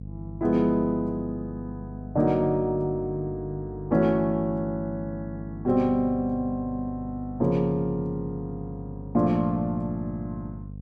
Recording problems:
electrical hum; 50 Hz, harmonics up to 500 Hz, SNR 12 dB

